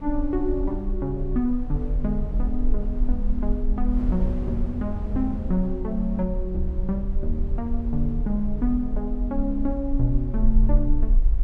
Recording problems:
low-frequency rumble; below 42 Hz, strongest tone 20 Hz, SNR 2 dB
wind noise; below 120 Hz, SNR 9 dB

